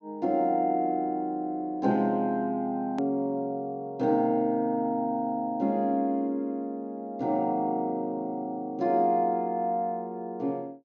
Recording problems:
low-pass filter; nothing above 8 kHz
edit click; at 3 s

